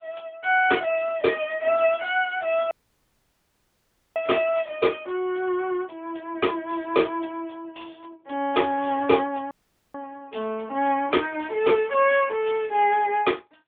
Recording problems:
telephone audio; 300 Hz to 3.5 kHz, AMR-NB
audio cutting out; at 2.5 s for 1.5 s and at 9.5 s

